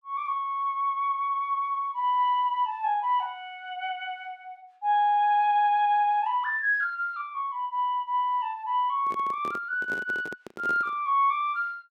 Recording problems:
handling noise; from 9 to 11 s; peak -8 dB vs average level

